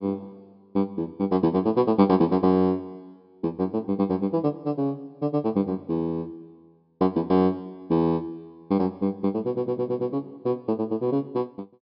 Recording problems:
low-pass filter; nothing above 5.5 kHz
audio stuttering; at 9.5 s

